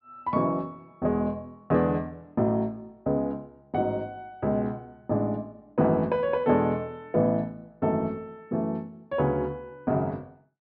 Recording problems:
treble cut off; nothing above 5.5 kHz

